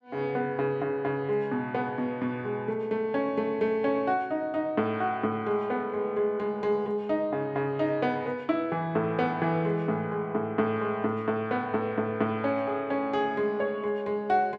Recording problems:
none

